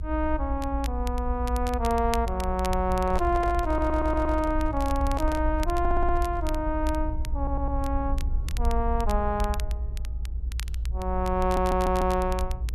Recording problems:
rumble; below 60 Hz, SNR 3 dB
crackling; vinyl, SNR 16 dB
handling noise; from 3 to 6.5 s; peak -4 dB vs average level
stutter; 4 times, first at 3.5 s

